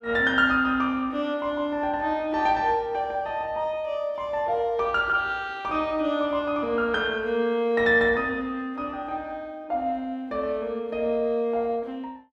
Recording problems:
none

